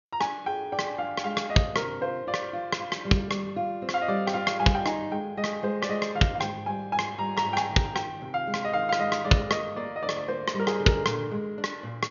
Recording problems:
treble cut off; nothing above 6.9 kHz

